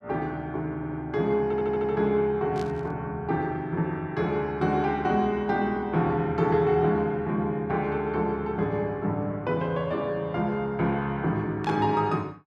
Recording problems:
stutter; at 1 s and at 1.5 s
static burst; at 2.5 s and at 12 s; peak -11 dB vs average level

